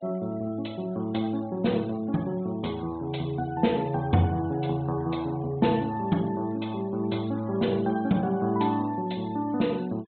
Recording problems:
low-pass filter; nothing above 4 kHz
denoising artefacts; signal-to-artefact ratio 26 dB

